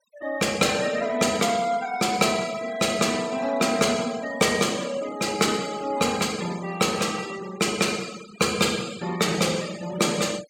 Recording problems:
noise reduction artefacts; signal-to-artefact ratio 17 dB

